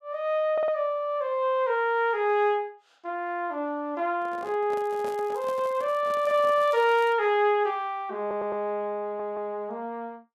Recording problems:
audio stuttering; at 0.5 s, at 8 s and at 9 s
handling noise; from 4 to 6.5 s; peak -11 dB vs average level
crackle; from 5 to 7 s; loose cable, SNR 27 dB

